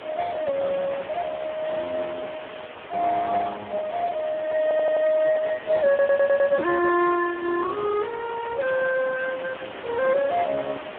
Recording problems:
phone line; 260 Hz to 2.1 kHz, Speex
background hiss; SNR 14 dB
wind on the microphone; below 890 Hz, SNR 21 dB
stutter; at 4.5 s and at 6 s

